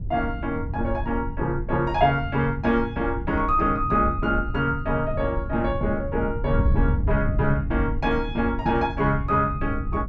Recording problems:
wind on the microphone; below 100 Hz, SNR 6 dB

